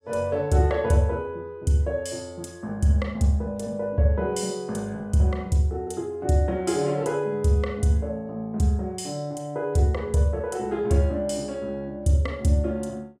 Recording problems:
none

